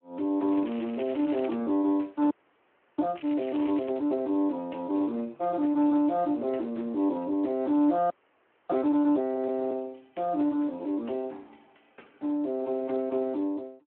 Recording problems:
phone line; 220 Hz to 3.8 kHz, Speex
crackle; until 1.5 s and at 3 s; loose cable, SNR 19 dB
audio freezing; at 2.5 s for 0.5 s and at 8 s for 0.5 s

